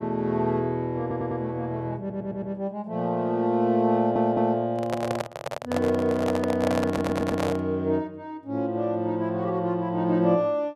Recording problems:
audio stuttering; 4 times, first at 1 s
microphone handling noise; from 4.5 to 7.5 s; peak +1 dB vs average level

